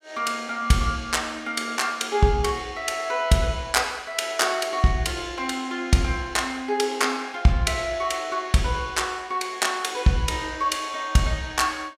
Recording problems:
none

